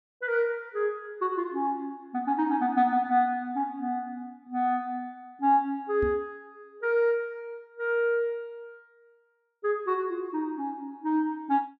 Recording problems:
microphone thump; at 6 s; peak -3 dB vs average level

